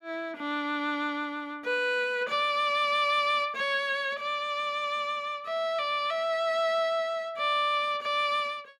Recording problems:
none

